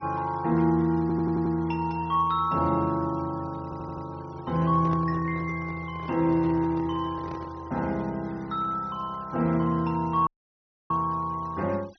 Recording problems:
treble missing; nothing above 6 kHz
denoising artefacts; signal-to-artefact ratio 26 dB
audio stuttering; at 1 s and at 3.5 s
handling noise; from 4.5 to 8 s; peak -7 dB vs average level
audio cutting out; at 10 s for 0.5 s

